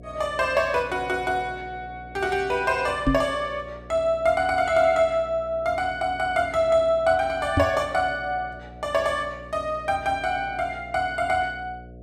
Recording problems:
electrical hum; 60 Hz, harmonics up to 720 Hz, SNR 20 dB
knock on the microphone; at 3 s and at 7.5 s; peak +5 dB vs average level

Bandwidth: 13.5 kHz